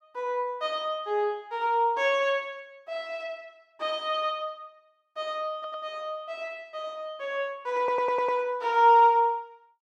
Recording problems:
stutter; at 5.5 s and at 8 s

